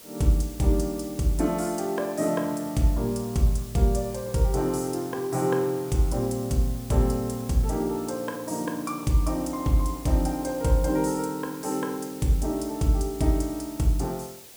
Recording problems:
hiss; SNR 17 dB

